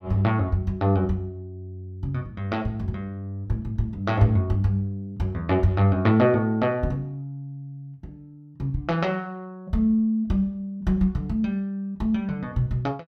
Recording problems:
none

